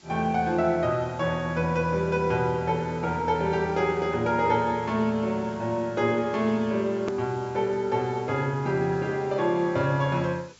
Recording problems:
treble missing; nothing above 8 kHz
hiss; SNR 27 dB
click at an edit; at 7 s

